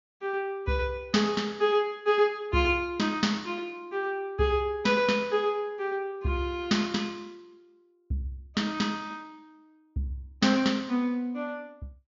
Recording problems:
treble missing; nothing above 7.1 kHz

